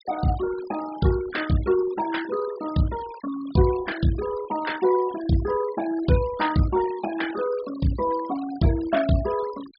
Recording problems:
treble missing; nothing above 5.5 kHz
noise reduction artefacts; signal-to-artefact ratio 17 dB

